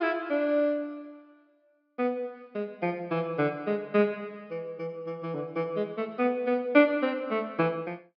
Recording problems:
low-pass filter; nothing above 5.5 kHz

